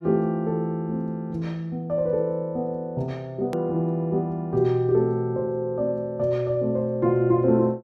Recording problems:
click at an edit; at 3.5 s

